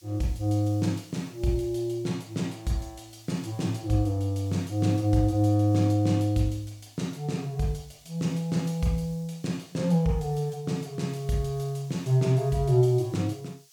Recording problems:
background hiss; slope +5 dB per octave, SNR 27 dB

